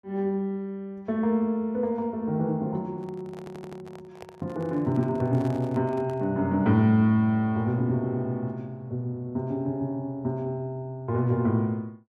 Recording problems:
microphone handling noise; from 3 to 6.5 s; peak -12 dB vs average level
stutter; at 3.5 s

